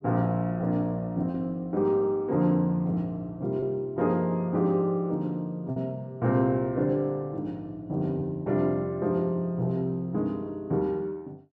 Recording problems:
lost packets; 1.1% of the sound replaced, filled with repeated pitch periods

